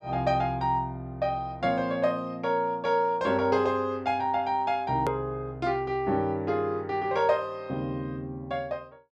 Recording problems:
edit click; at 5 s

